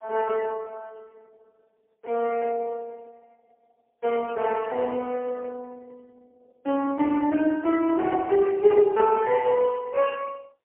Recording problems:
telephone audio; 260 Hz to 3 kHz, AMR-NB, then MP3
static burst; at 2.5 s and at 4.5 s; peak -11 dB vs average level

